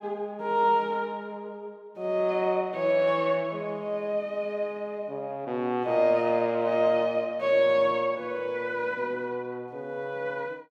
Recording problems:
none

